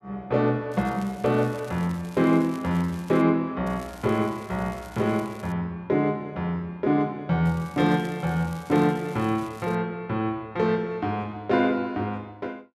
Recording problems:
crackle; from 0.5 to 3 s, from 3.5 to 5.5 s and from 7.5 to 10 s; loose cable, SNR 24 dB

